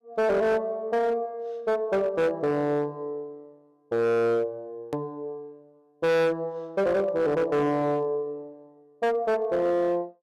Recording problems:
distorted audio; hard clipping, signal-to-distortion ratio 8 dB
click at an edit; at 5 s

